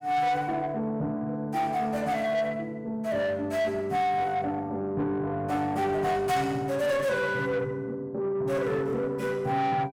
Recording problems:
distortion; soft clipping, signal-to-distortion ratio 10 dB

